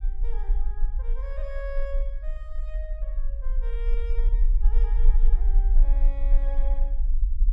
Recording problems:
low-frequency rumble; below 38 Hz, strongest tone 28 Hz, SNR -16 dB

